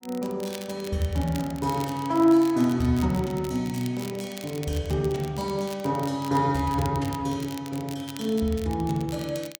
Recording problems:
crackle; vinyl, SNR 17 dB

